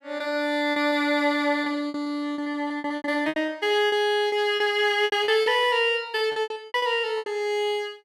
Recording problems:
packet loss; 15% of the sound replaced, filled with repeated pitch periods

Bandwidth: 15 kHz